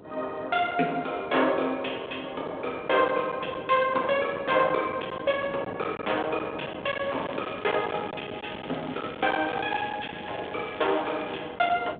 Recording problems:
phone line; 280 Hz to 3.6 kHz, G.726
distorted audio; hard clipping, signal-to-distortion ratio 26 dB
wind on the microphone; below 1.5 kHz, SNR 11 dB
crackle; from 7 to 8 s and from 8.5 to 11 s; loose cable, SNR 17 dB

